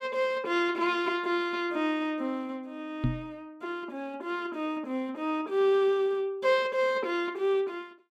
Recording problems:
microphone bump; at 3 s; peak +5 dB vs average level

